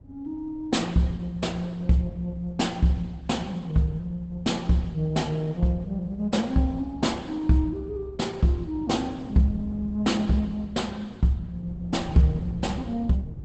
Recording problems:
codec artefacts; Opus, log-spectral distance 2 dB, nothing above 8 kHz
wind on the microphone; below 180 Hz, SNR 18 dB

